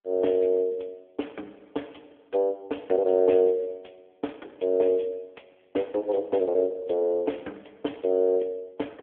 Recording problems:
phone line; 240 Hz to 3.5 kHz, AMR-NB

